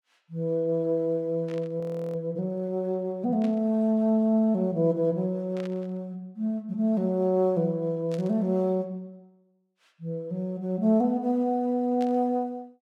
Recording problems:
static burst; 5 times, first at 1.5 s; peak -14 dB vs average level
frozen audio; at 2 s

